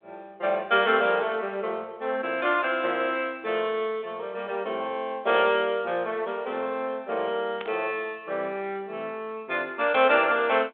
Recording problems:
phone line; 240 Hz to 3.5 kHz, G.726
static burst; at 7.5 s; peak -8 dB vs average level

